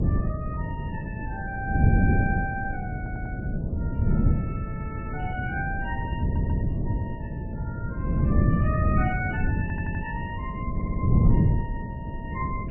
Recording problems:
lossy compression; MP3, then Vorbis, log-spectral distance 2 dB, nothing above 2.7 kHz
mains hum; 60 Hz, harmonics up to 660 Hz, SNR 9 dB
wind noise; below 180 Hz, SNR -8 dB
stutter; 4 times, first at 3 s

